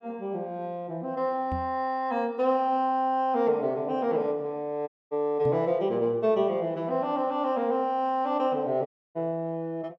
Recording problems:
microphone thump; at 1.5 s and at 5.5 s; peak -2 dB vs average level
audio cutting out; at 5 s and at 9 s

